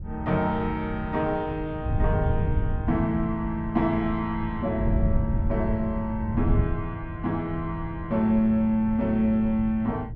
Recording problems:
wind on the microphone; below 130 Hz, SNR 5 dB

